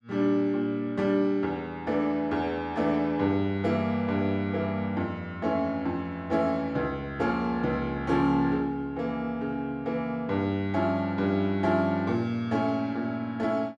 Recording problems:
none

